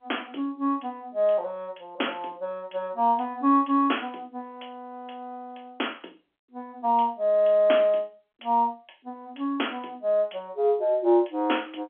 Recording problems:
telephone audio; 240 Hz to 3.4 kHz, G.711

